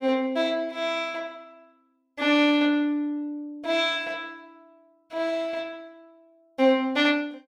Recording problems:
none

